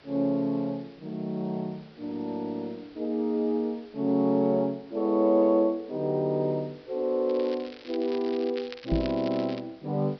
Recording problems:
treble cut off; nothing above 5.5 kHz
background hiss; slope -4 dB per octave, SNR 27 dB
crackle; from 7.5 to 9.5 s; loose cable, SNR 17 dB
microphone thump; at 9 s; peak +2 dB vs average level

